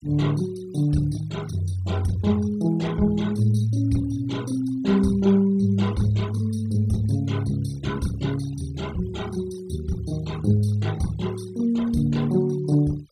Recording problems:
noise reduction artefacts; signal-to-artefact ratio 21 dB

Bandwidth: 15.5 kHz